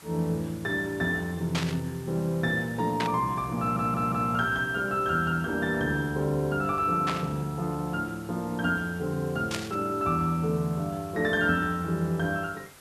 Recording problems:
background hiss; slope -2 dB per octave, SNR 21 dB
static burst; 4 times, first at 1.5 s; peak +1 dB vs average level
audio stuttering; at 3.5 s

